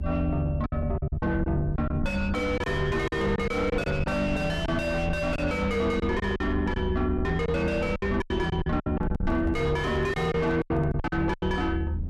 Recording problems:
distorted audio; soft clipping, signal-to-distortion ratio 6 dB
low-frequency rumble; below 96 Hz, SNR 4 dB
lost packets; 10% of the sound replaced, filled with silence
microphone handling noise; from 9 to 11 s; peak -8 dB vs average level

